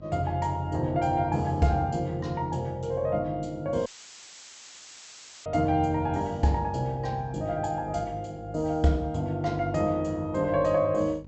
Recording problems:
low-pass filter; nothing above 8 kHz
hum; 50 Hz, harmonics up to 800 Hz, SNR 20 dB
audio cutting out; at 4 s for 1.5 s; filled with static

